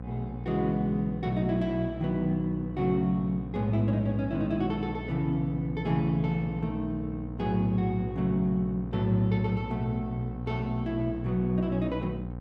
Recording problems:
hum; 60 Hz, harmonics up to 1.1 kHz, SNR 9 dB

